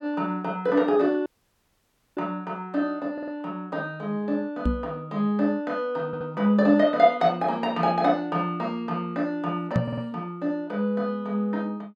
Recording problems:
dropout; at 1.5 s for 1 s
stutter; at 3 s, at 6 s and at 10 s
microphone bump; at 4.5 s and at 10 s; peak +5 dB vs average level

